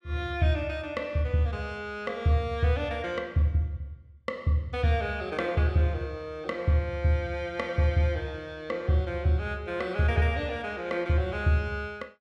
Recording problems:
none

